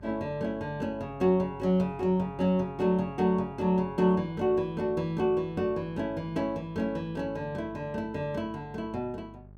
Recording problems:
hum; 50 Hz, harmonics up to 800 Hz, SNR 21 dB

